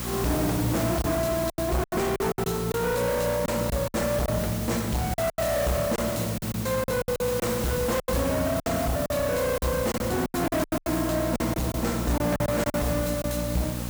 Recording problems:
distorted audio; soft clipping, signal-to-distortion ratio 7 dB
hum; 60 Hz, harmonics up to 1.1 kHz, SNR 9 dB
hiss; SNR 8 dB
packet loss; 11% of the sound replaced, filled with silence

